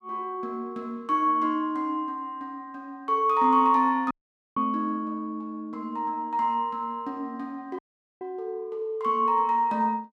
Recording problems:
dropout; at 4 s and at 8 s

